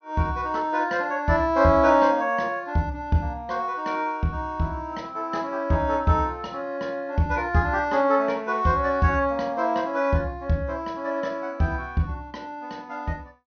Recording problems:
low-pass filter; nothing above 6.3 kHz

